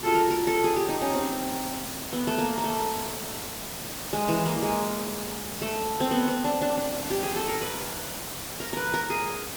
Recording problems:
background hiss; slope -2 dB per octave, SNR 5 dB

